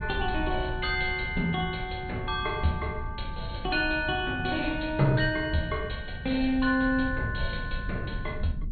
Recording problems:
treble missing; nothing above 4.4 kHz
low-frequency rumble; below 110 Hz, SNR 9 dB

